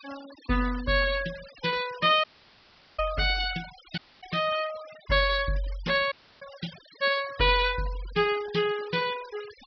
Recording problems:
low-pass filter; nothing above 5.5 kHz
denoising artefacts; signal-to-artefact ratio 17 dB
audio cutting out; at 2 s for 0.5 s, at 4 s and at 6 s

